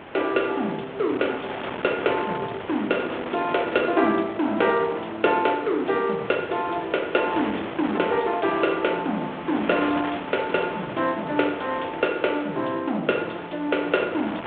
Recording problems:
telephone audio; 260 Hz to 3.6 kHz, G.726
wind noise; below 1.9 kHz, SNR 10 dB

